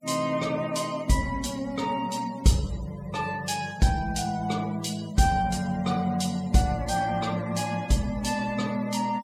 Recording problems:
denoising artefacts; signal-to-artefact ratio 20 dB

